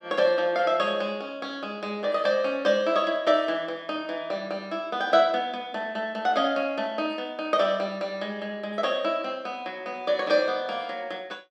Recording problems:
none

